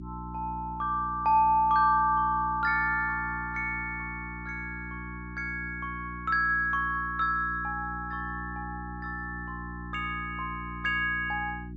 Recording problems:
low-pass filter; nothing above 7.8 kHz
hum; 60 Hz, harmonics up to 360 Hz, SNR 13 dB

